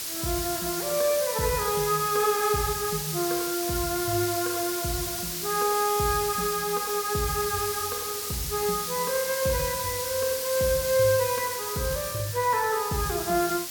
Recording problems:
background hiss; SNR 3 dB

